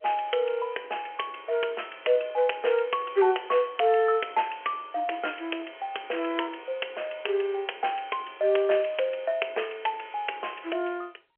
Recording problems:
phone line; 320 Hz to 3.2 kHz, G.711

